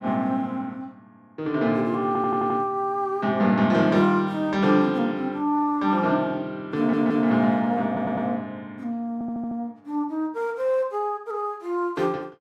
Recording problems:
audio stuttering; 4 times, first at 2 s

